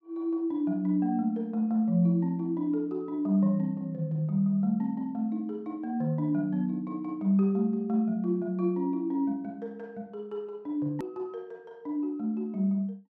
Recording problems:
edit click; at 11 s

